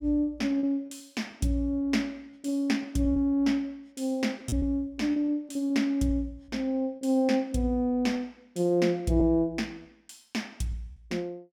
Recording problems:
lost packets; 5% of the sound replaced, filled with repeated pitch periods

